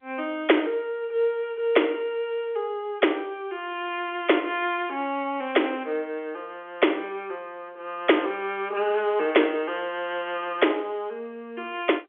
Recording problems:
telephone audio; 260 Hz to 3.5 kHz, G.711

